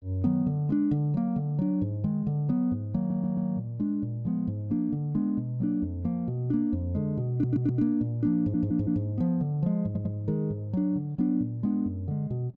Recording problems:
audio stuttering; 4 times, first at 3 s

